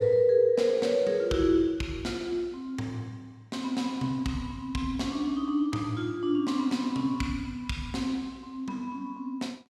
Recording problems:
none

